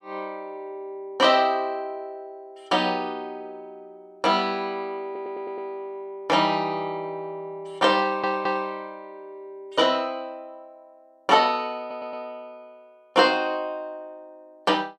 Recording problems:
audio stuttering; at 5 s, at 8 s and at 12 s

